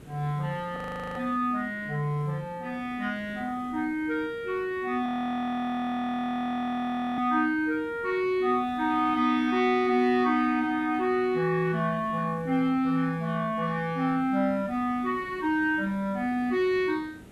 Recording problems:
hiss; SNR 22 dB
frozen audio; at 1 s and at 5 s for 2 s

